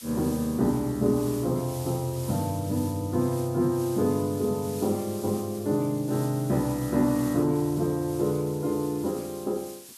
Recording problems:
background hiss; slope +4 dB per octave, SNR 16 dB

